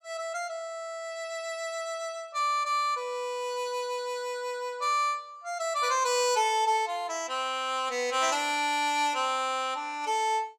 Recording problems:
none

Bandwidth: 17 kHz